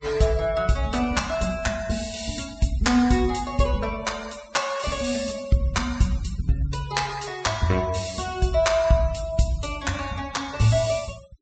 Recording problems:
treble missing; nothing above 8 kHz
denoising artefacts; signal-to-artefact ratio 20 dB

